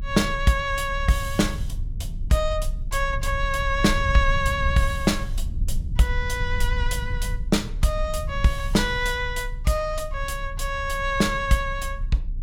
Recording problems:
rumble; below 68 Hz, strongest tone 30 Hz, SNR 6 dB

